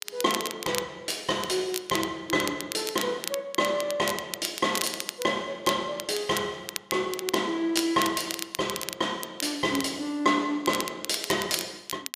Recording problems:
crackle; vinyl, SNR 7 dB

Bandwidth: 14.5 kHz